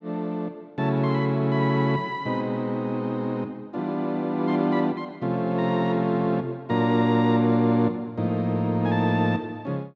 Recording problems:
none

